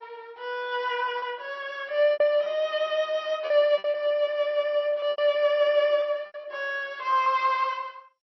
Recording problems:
lossy compression; MP3, then MP2, log-spectral distance 2 dB, nothing above 5.8 kHz
lost packets; 7% of the sound replaced, filled with repeated pitch periods

